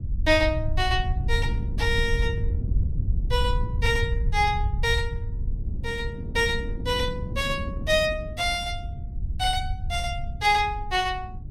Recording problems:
rumble; below 86 Hz, SNR 4 dB
wind on the microphone; below 190 Hz, SNR 12 dB

